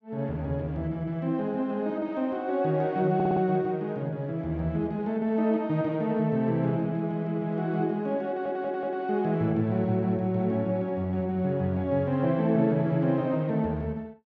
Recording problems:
audio stuttering; at 3 s and at 8.5 s

